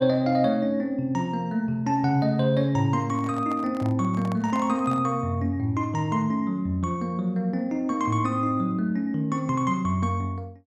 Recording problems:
handling noise; from 3 to 5 s; peak -8 dB vs average level

